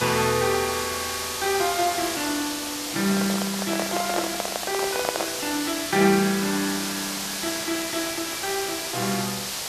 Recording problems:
hiss; slope 0 dB per octave, SNR 2 dB
handling noise; from 3 to 5.5 s; peak +3 dB vs average level

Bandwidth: 14 kHz